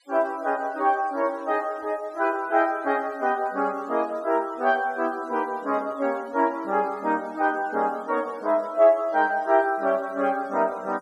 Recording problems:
denoising artefacts; signal-to-artefact ratio 27 dB

